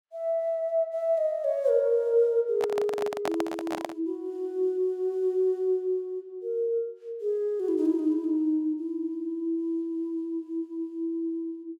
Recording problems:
microphone handling noise; from 2.5 to 4 s; peak 0 dB vs average level

